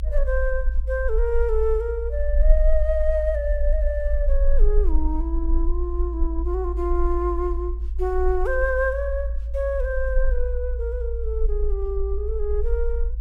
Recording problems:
rumble; below 54 Hz, SNR -1 dB

